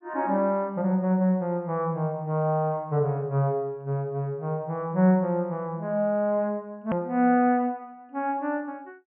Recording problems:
treble cut off; nothing above 3.2 kHz
hard cut with a click; at 7 s

